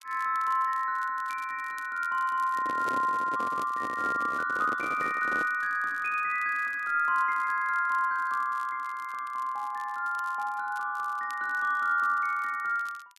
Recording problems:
crackle; vinyl, SNR 27 dB
handling noise; from 2.5 to 5.5 s; peak -7 dB vs average level

